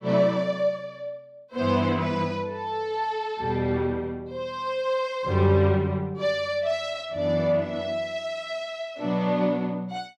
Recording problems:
none

